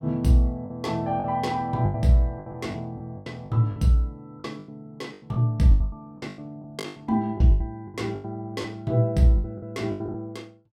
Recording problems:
lost packets; 15% of the sound replaced, filled with the last packet

